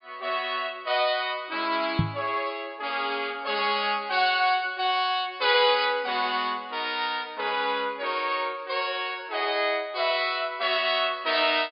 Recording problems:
low-pass filter; nothing above 5 kHz
microphone bump; at 2 s; peak +6 dB vs average level

